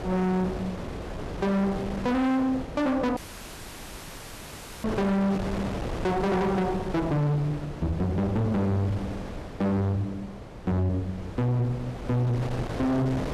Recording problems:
distortion; hard clipping, signal-to-distortion ratio 6 dB
hum; 60 Hz, harmonics up to 1.3 kHz, SNR 24 dB
wind noise; below 690 Hz, SNR 9 dB
audio cutting out; at 3 s for 1.5 s

